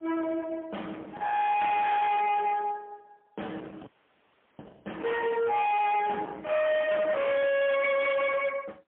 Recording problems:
telephone audio; 840 Hz to 2.2 kHz, AMR-NB, then MP3
distortion; hard clipping, signal-to-distortion ratio 6 dB
frozen audio; at 4 s for 0.5 s

